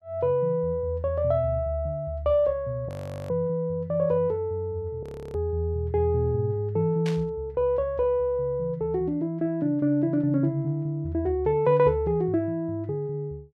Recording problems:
audio freezing; at 3 s and at 5 s
static burst; at 7 s; peak -8 dB vs average level

